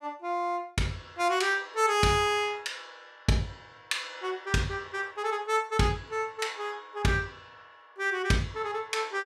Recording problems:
none

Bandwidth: 15.5 kHz